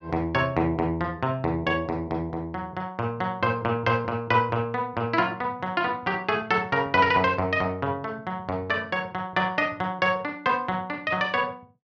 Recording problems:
none

